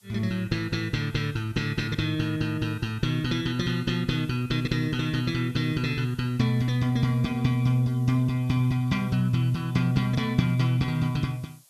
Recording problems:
background hiss; SNR 29 dB

